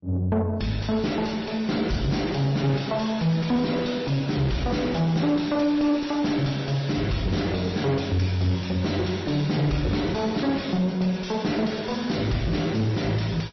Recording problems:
lossy codec; MP3, then AAC, log-spectral distance 5 dB, nothing above 5.8 kHz
distortion; soft clipping, signal-to-distortion ratio 9 dB

